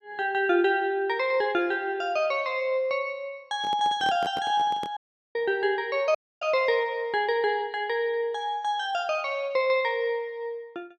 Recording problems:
handling noise; from 3.5 to 5 s; peak -7 dB vs average level
audio cutting out; at 5 s and at 6 s

